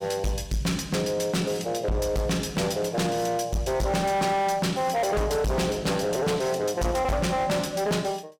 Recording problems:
distorted audio; hard clipping, signal-to-distortion ratio 7 dB

